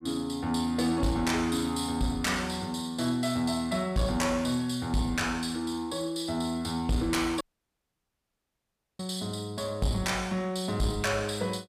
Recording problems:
distorted audio; soft clipping, signal-to-distortion ratio 11 dB
dropout; at 7.5 s for 1.5 s

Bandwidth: 15 kHz